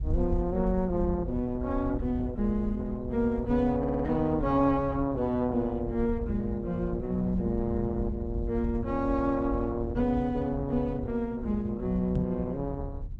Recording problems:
lossy compression; Opus, log-spectral distance 2 dB
rumble; below 82 Hz, SNR 7 dB
stutter; at 4 s
knock on the microphone; at 12 s; peak +3 dB vs average level

